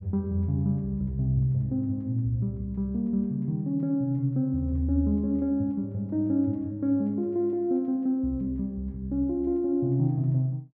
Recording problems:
none

